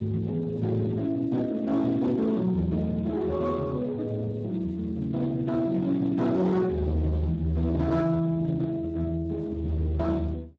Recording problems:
lossy compression; Speex, log-spectral distance 2 dB
distorted audio; hard clipping, signal-to-distortion ratio 12 dB

